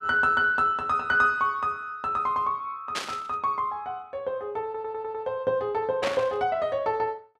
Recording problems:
burst of static; at 3 s and at 6 s; peak 0 dB vs average level
stutter; at 4.5 s

